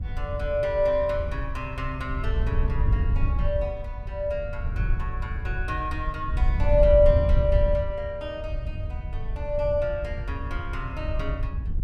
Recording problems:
wind noise; below 82 Hz, SNR 1 dB

